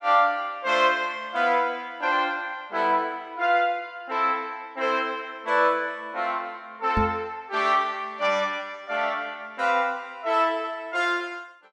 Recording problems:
microphone bump; at 7 s; peak +2 dB vs average level

